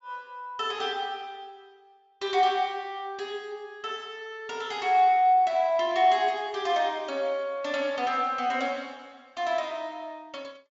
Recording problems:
treble cut off; nothing above 7.4 kHz

